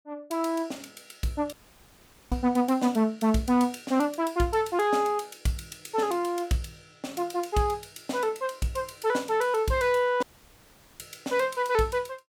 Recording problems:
dropout; at 1.5 s for 1 s and at 10 s for 1 s

